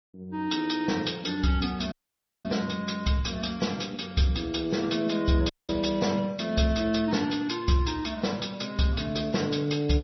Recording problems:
codec artefacts; MP3, log-spectral distance 6 dB, nothing above 5.8 kHz
audio cutting out; at 2 s for 0.5 s and at 5.5 s

